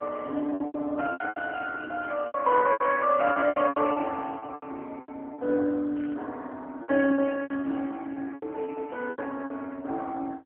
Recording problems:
telephone audio; 240 Hz to 3 kHz, AMR-NB
packet loss; 15% of the sound replaced, filled with repeated pitch periods
static burst; 4 times, first at 2 s; peak -15 dB vs average level

